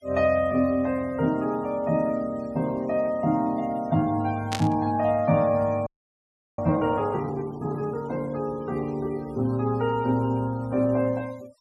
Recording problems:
denoising artefacts; signal-to-artefact ratio 25 dB
burst of static; at 4.5 s; peak -1 dB vs average level
frozen audio; at 6 s for 0.5 s

